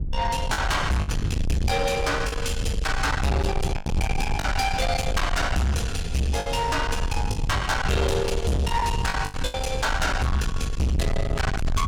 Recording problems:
distortion; soft clipping, signal-to-distortion ratio 6 dB
rumble; below 150 Hz, SNR 4 dB
packet loss; 6% of the sound replaced, filled with the last packet

